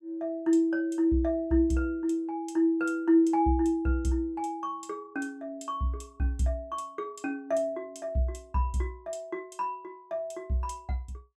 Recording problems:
none

